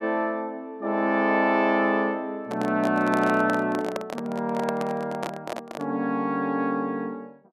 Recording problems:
handling noise; from 2.5 to 6 s; peak -1 dB vs average level

